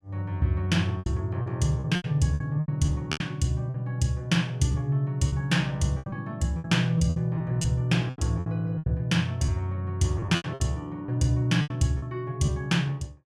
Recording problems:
packet loss; 11% of the sound replaced, filled with repeated pitch periods

